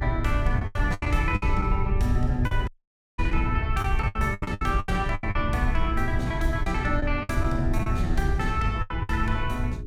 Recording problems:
hum; 60 Hz, harmonics up to 420 Hz, SNR 15 dB
low-frequency rumble; below 86 Hz, SNR 1 dB
lost packets; 11% of the sound replaced, filled with the last packet
audio cutting out; at 2.5 s for 0.5 s

